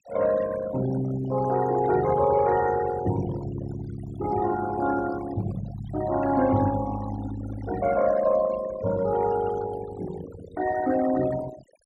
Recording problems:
noise reduction artefacts; signal-to-artefact ratio 13 dB

